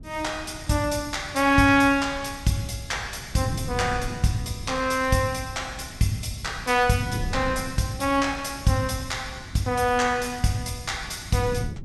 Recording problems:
wind on the microphone; below 170 Hz, SNR 14 dB

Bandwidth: 14.5 kHz